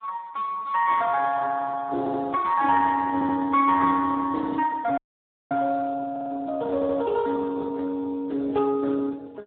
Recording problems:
telephone audio; 240 Hz to 2.2 kHz, Speex
audio stuttering; 4 times, first at 2 s
audio freezing; at 5 s for 0.5 s

